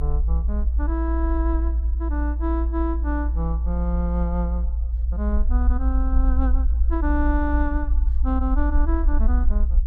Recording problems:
low-frequency rumble; below 58 Hz, strongest tone 58 Hz, SNR -6 dB

